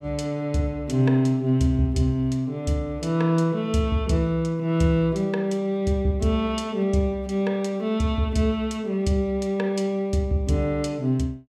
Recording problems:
none

